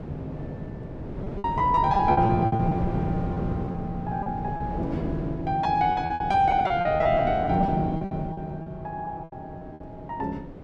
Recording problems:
wind noise; below 370 Hz, SNR 7 dB
lost packets; 13% of the sound replaced, filled with repeated pitch periods

